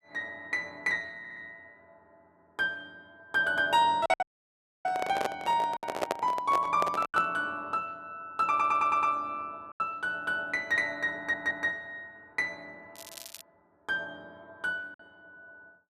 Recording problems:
packet loss; 3% of the sound replaced, filled with silence
stutter; at 1 s, at 8.5 s and at 11 s
handling noise; from 4 to 7.5 s; peak +4 dB vs average level
audio cutting out; at 4 s for 0.5 s
crackling; at 13 s; loose cable, SNR 16 dB

